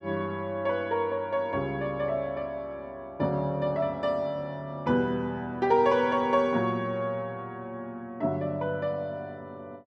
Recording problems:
none

